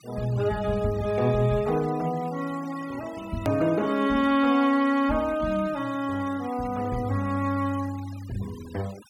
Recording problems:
noise reduction artefacts; signal-to-artefact ratio 20 dB
click at an edit; at 3.5 s

